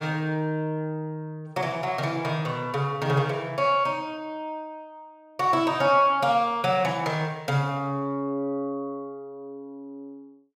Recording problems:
none

